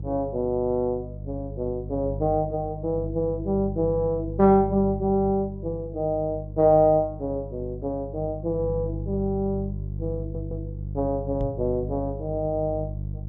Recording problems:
hum; 50 Hz, harmonics up to 350 Hz, SNR 9 dB
stutter; at 10 s
microphone bump; at 11 s; peak -2 dB vs average level

